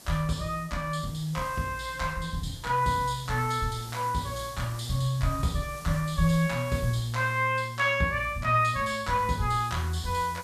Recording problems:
hiss; SNR 19 dB

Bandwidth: 14 kHz